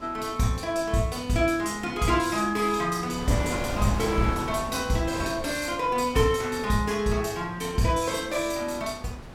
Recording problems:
wind on the microphone; below 890 Hz, SNR 12 dB

